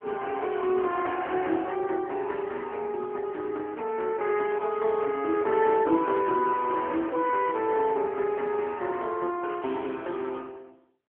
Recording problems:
phone line; 240 Hz to 3.2 kHz, AMR-NB

